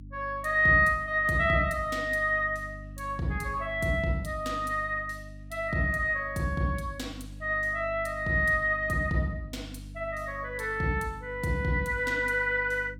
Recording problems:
electrical hum; 50 Hz, harmonics up to 300 Hz, SNR 17 dB

